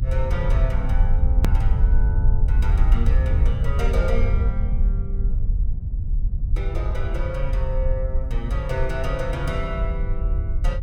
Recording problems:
rumble; below 68 Hz, SNR -8 dB
click at an edit; at 1.5 s

